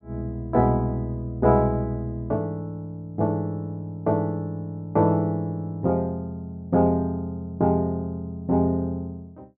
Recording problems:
none

